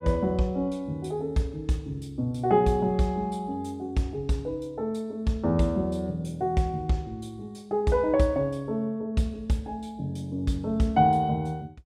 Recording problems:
none

